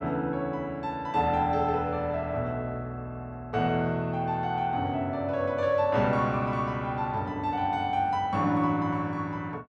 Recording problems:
none

